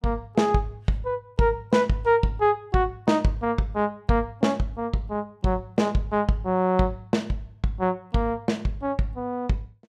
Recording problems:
none

